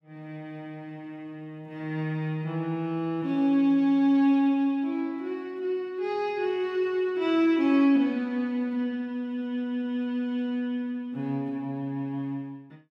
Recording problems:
none

